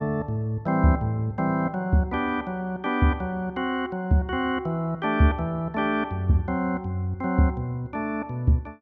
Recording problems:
none

